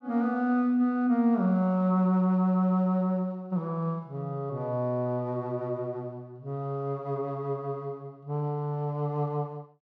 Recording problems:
none

